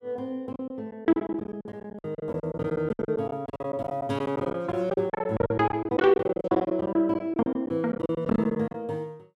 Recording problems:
packet loss; 19% of the sound replaced, filled with silence

